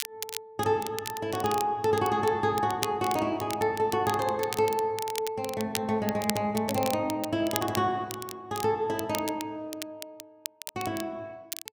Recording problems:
crackling; vinyl, SNR 10 dB

